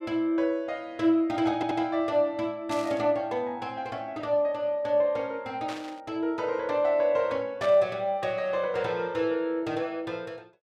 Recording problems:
audio stuttering; at 1.5 s
burst of static; at 2.5 s, at 5.5 s and at 7.5 s; peak -7 dB vs average level

